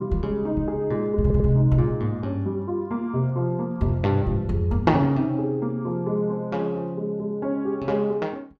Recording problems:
audio stuttering; at 1 s

